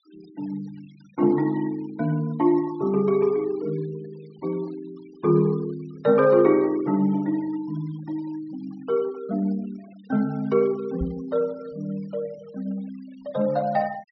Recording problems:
low-pass filter; nothing above 5.8 kHz
denoising artefacts; signal-to-artefact ratio 26 dB
knock on the microphone; at 11 s; peak -2 dB vs average level

